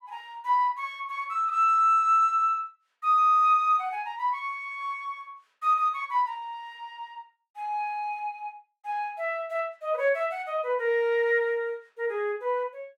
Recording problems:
none

